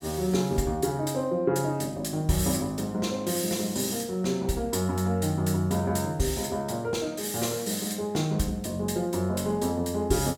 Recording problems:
none

